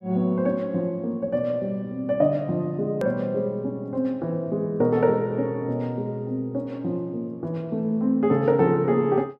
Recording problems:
click at an edit; at 3 s

